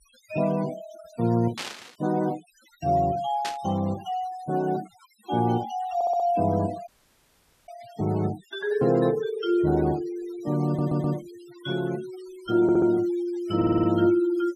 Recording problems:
denoising artefacts; signal-to-artefact ratio 22 dB
burst of static; at 1.5 s and at 3.5 s; peak -3 dB vs average level
audio stuttering; 4 times, first at 6 s
audio cutting out; at 7 s for 1 s

